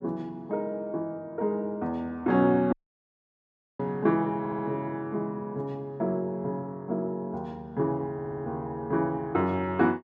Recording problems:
dropout; at 2.5 s for 1 s
stutter; at 4.5 s and at 8 s

